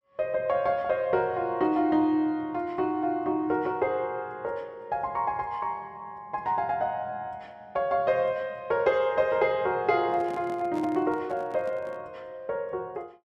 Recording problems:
handling noise; from 10 to 12 s; peak -9 dB vs average level

